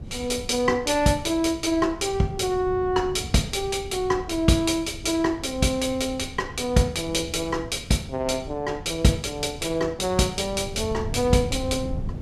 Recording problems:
wind on the microphone; below 150 Hz, SNR 14 dB

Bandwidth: 14.5 kHz